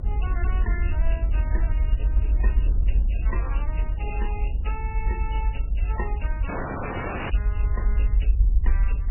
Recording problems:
lossy codec; MP3, then Vorbis, log-spectral distance 5 dB, nothing above 2.9 kHz
rumble; below 54 Hz, SNR -13 dB
wind noise; below 160 Hz, SNR 3 dB
audio cutting out; at 6.5 s for 1 s

